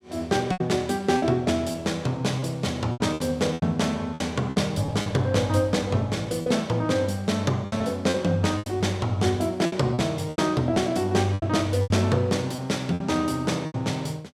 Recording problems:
packet loss; 9% of the sound replaced, filled with repeated pitch periods

